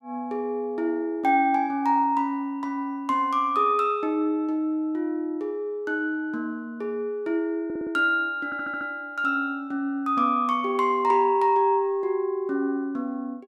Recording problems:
audio stuttering; at 7.5 s and at 8.5 s

